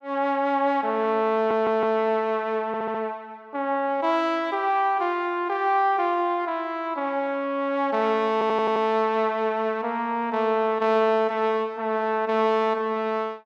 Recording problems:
stutter; at 1.5 s, at 2.5 s and at 8.5 s

